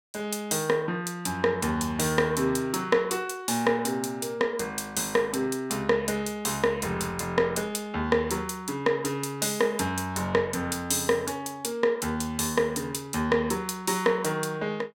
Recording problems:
none

